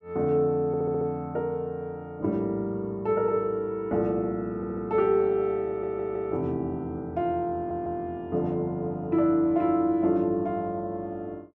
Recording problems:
audio stuttering; 4 times, first at 0.5 s

